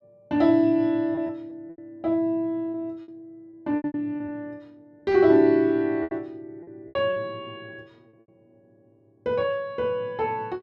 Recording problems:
packet loss; 8% of the sound replaced, filled with repeated pitch periods

